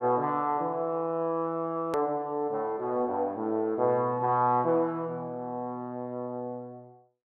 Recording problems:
hard cut with a click; at 2 s

